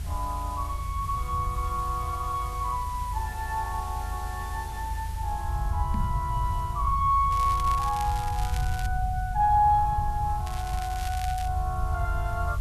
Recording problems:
background hiss; slope -2 dB per octave, SNR 18 dB
low-frequency rumble; below 88 Hz, SNR 4 dB
microphone bump; at 6 s; peak 0 dB vs average level
crackling; from 7.5 to 9 s and from 10 to 11 s; loose cable, SNR 13 dB

